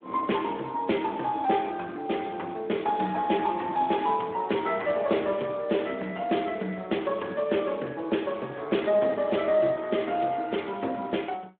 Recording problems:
phone line; 240 Hz to 3.6 kHz, Speex

